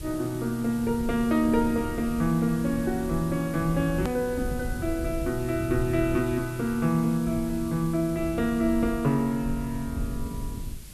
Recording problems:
hiss; slope +2 dB per octave, SNR 19 dB
low-frequency rumble; below 110 Hz, SNR 11 dB
edit click; at 4 s

